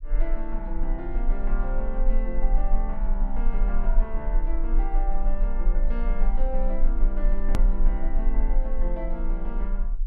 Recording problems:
rumble; below 34 Hz, strongest tone 18 Hz, SNR -7 dB
edit click; at 7.5 s

